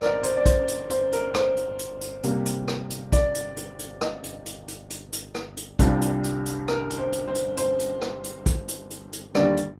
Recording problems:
codec artefacts; Vorbis, then Opus, log-spectral distance 4 dB, nothing above 15.5 kHz
hum; 50 Hz, harmonics up to 900 Hz, SNR 20 dB

